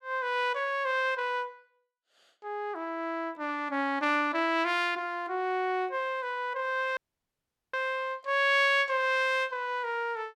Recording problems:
audio cutting out; at 7 s for 1 s

